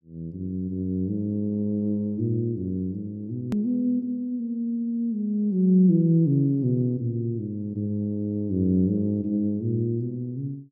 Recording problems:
click at an edit; at 3.5 s

